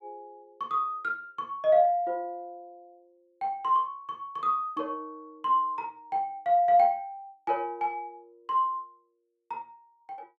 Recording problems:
none

